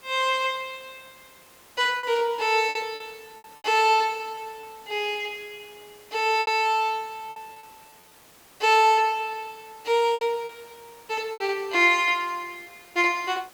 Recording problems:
hiss; slope -3 dB per octave, SNR 27 dB
lost packets; 7% of the sound replaced, filled with repeated pitch periods

